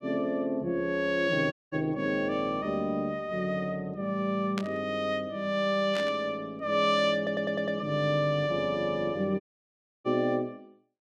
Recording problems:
audio cutting out; at 1.5 s and at 9.5 s for 0.5 s
static burst; at 4.5 s and at 6 s; peak -3 dB vs average level
stutter; at 7 s

